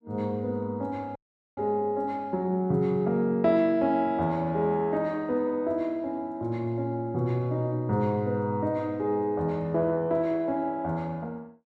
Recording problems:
audio cutting out; at 1 s

